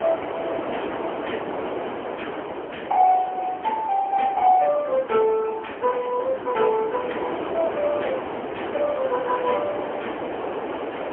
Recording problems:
phone line; 280 Hz to 3.3 kHz, AMR-NB, then MP3
wind noise; below 960 Hz, SNR 7 dB

